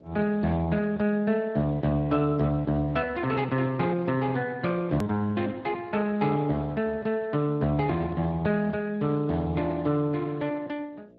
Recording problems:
lossy codec; Speex, log-spectral distance 3 dB, nothing above 13.1 kHz
hum; 60 Hz, harmonics up to 660 Hz, SNR 27 dB
click at an edit; at 5 s

